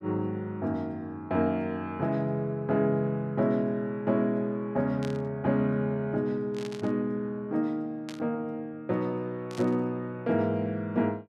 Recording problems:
static burst; 4 times, first at 5 s; peak -9 dB vs average level

